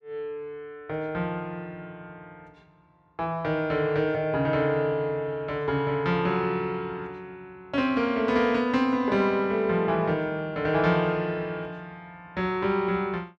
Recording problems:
none

